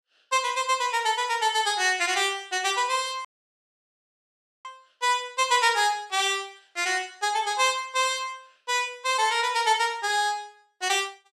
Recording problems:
dropout; at 3.5 s for 1.5 s

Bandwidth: 14.5 kHz